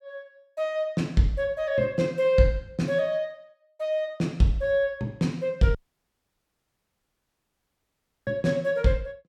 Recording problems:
audio cutting out; at 6 s for 2.5 s

